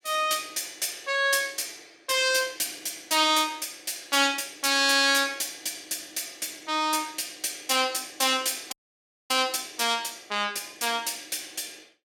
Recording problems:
audio cutting out; at 8.5 s for 0.5 s

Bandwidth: 17.5 kHz